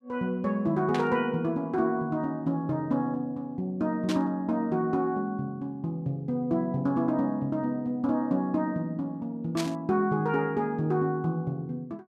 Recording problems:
static burst; at 1 s, at 4 s and at 9.5 s; peak -2 dB vs average level

